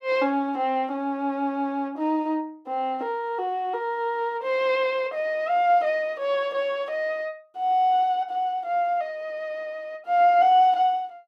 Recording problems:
none

